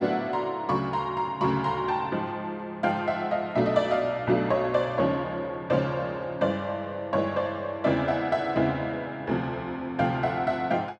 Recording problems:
none

